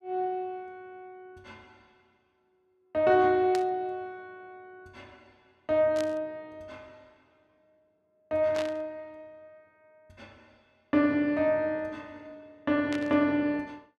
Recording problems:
static burst; 4 times, first at 3.5 s; peak -6 dB vs average level

